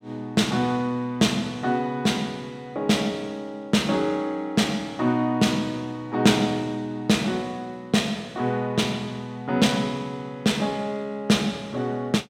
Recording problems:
none

